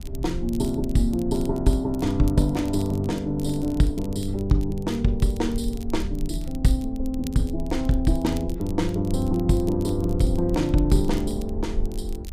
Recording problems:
low-frequency rumble; below 56 Hz, SNR 10 dB
crackling; vinyl, SNR 23 dB

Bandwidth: 15 kHz